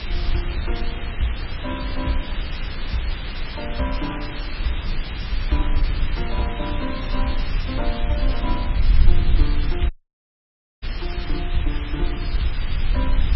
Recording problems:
codec artefacts; MP3, log-spectral distance 6 dB, nothing above 5.5 kHz
hiss; SNR 4 dB
rumble; below 52 Hz, SNR -3 dB
audio cutting out; at 10 s for 1 s

